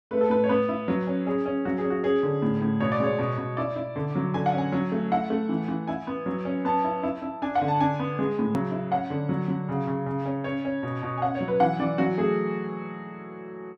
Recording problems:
edit click; at 8.5 s

